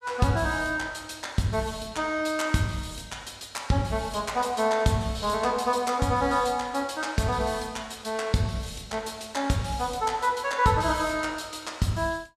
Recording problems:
none

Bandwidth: 14.5 kHz